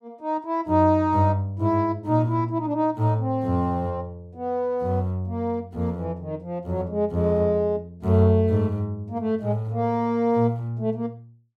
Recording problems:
none

